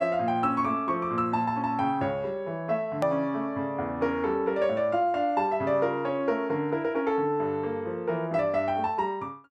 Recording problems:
hard cut with a click; at 3 s

